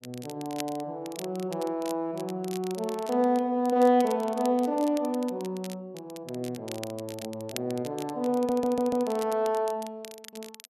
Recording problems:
crackling; vinyl, SNR 17 dB
audio stuttering; at 8.5 s

